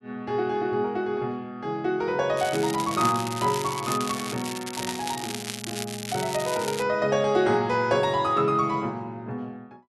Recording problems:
crackle; from 2.5 to 7 s; loose cable, SNR 8 dB

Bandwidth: 12 kHz